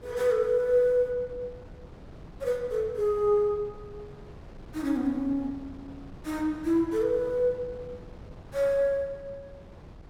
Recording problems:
wind on the microphone; below 380 Hz, SNR 20 dB

